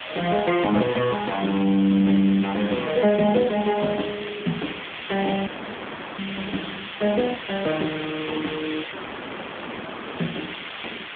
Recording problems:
phone line; 150 Hz to 3.4 kHz, AMR-NB
hiss; SNR 10 dB
audio cutting out; at 5.5 s for 0.5 s and at 9 s for 1.5 s

